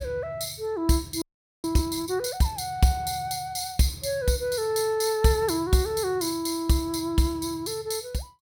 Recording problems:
audio freezing; at 1 s

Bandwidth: 17 kHz